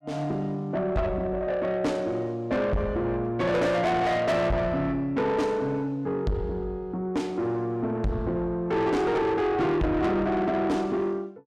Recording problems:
distortion; soft clipping, signal-to-distortion ratio 7 dB

